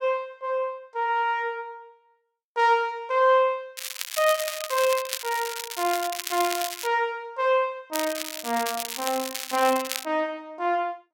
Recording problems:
crackling; from 4 to 7 s and from 8 to 10 s; loose cable, SNR 6 dB

